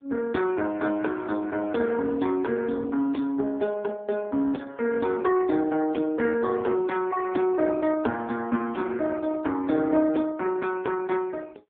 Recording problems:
telephone audio; 220 Hz to 3.5 kHz, AMR-NB

